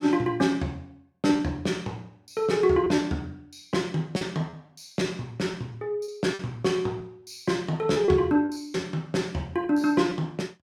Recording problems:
lost packets; 5% of the sound replaced, filled with repeated pitch periods

